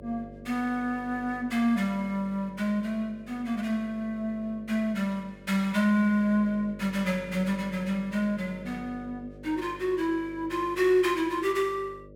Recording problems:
hum; 50 Hz, harmonics up to 600 Hz, SNR 19 dB

